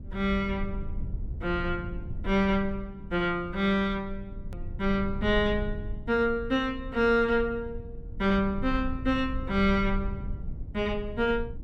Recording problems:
low-frequency rumble; below 86 Hz, SNR 10 dB
hard cut with a click; at 4.5 s

